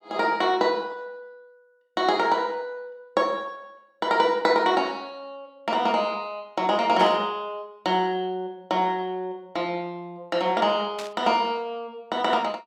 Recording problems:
static burst; at 7 s and at 11 s; peak -7 dB vs average level

